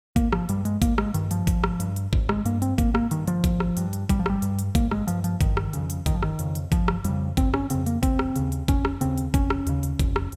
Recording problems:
none

